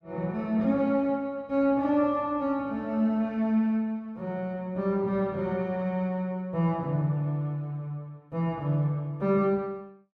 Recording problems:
none

